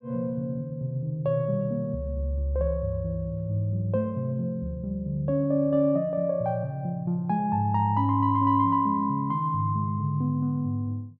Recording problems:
treble cut off; nothing above 8 kHz

